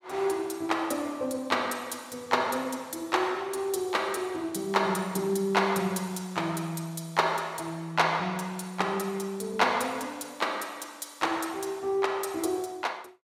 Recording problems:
none

